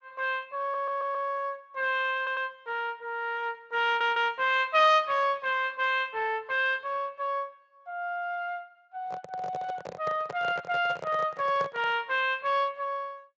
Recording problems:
codec artefacts; Opus, then Speex, log-spectral distance 2 dB
audio stuttering; at 0.5 s, at 2 s and at 4 s
handling noise; from 9 to 12 s; peak -5 dB vs average level

